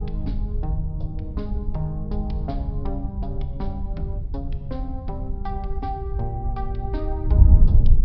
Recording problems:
treble missing; nothing above 5.5 kHz
wind on the microphone; below 78 Hz, SNR -7 dB

